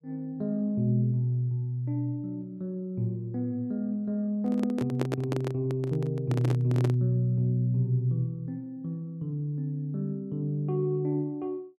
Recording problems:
microphone handling noise; from 4.5 to 7 s; peak +2 dB vs average level

